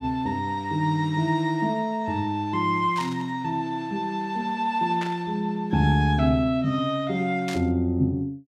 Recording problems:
static burst; at 3 s, at 5 s and at 7.5 s; peak -6 dB vs average level

